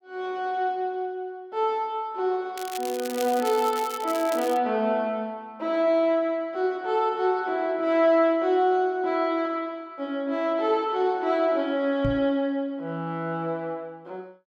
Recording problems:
crackle; from 2.5 to 4.5 s; loose cable, SNR 13 dB
microphone bump; at 12 s; peak 0 dB vs average level

